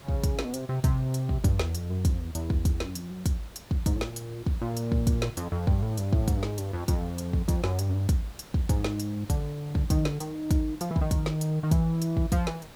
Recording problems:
background hiss; slope -4 dB per octave, SNR 20 dB

